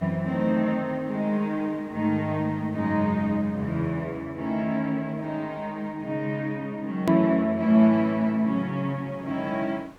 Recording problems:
background hiss; slope -6 dB per octave, SNR 27 dB
hard cut with a click; at 7 s

